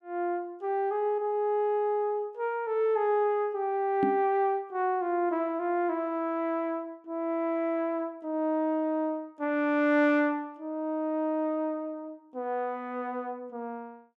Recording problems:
knock on the microphone; at 4 s; peak +4 dB vs average level

